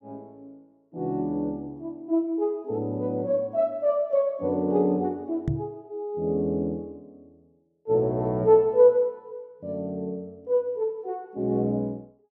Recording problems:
knock on the microphone; at 5.5 s; peak +2 dB vs average level

